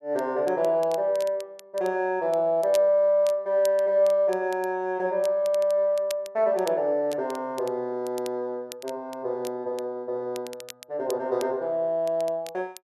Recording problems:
crackling; vinyl, SNR 21 dB

